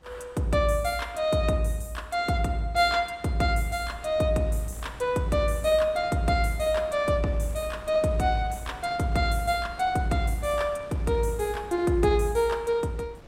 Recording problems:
wind on the microphone; below 760 Hz, SNR 21 dB

